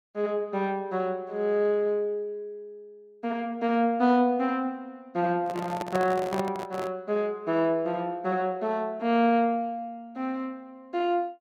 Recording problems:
microphone handling noise; from 5.5 to 7 s; peak -1 dB vs average level

